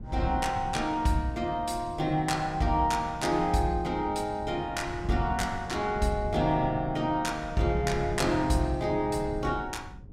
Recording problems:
wind on the microphone; below 170 Hz, SNR 12 dB

